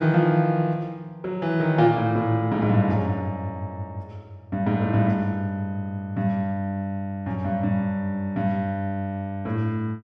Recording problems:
none

